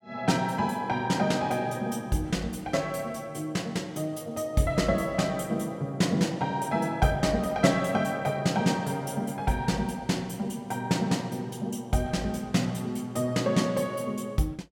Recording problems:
none

